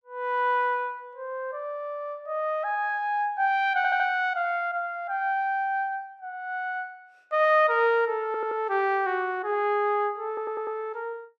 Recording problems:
stutter; at 4 s, at 8.5 s and at 10 s

